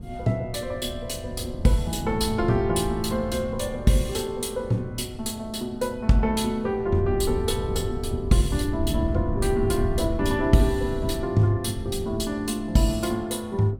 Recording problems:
wind on the microphone; below 130 Hz, SNR 7 dB

